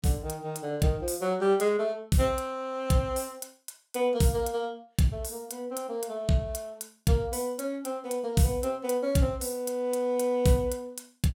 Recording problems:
none

